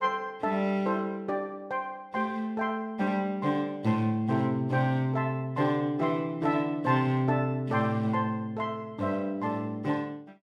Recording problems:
none

